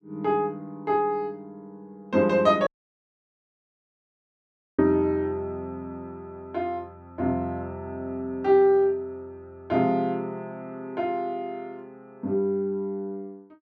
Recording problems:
dropout; at 2.5 s for 2 s

